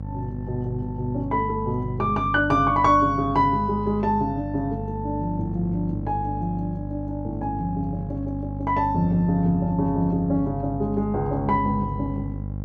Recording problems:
hum; 50 Hz, harmonics up to 800 Hz, SNR 8 dB

